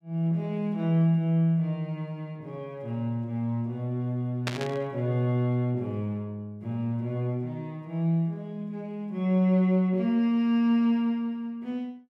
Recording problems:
burst of static; at 4.5 s; peak +1 dB vs average level

